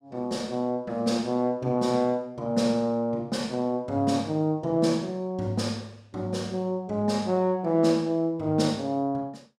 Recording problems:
none

